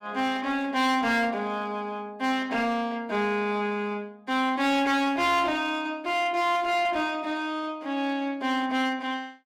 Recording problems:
distorted audio; hard clipping, uneven, signal-to-distortion ratio 11 dB

